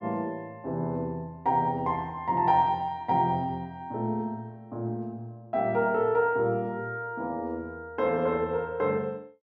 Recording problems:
none

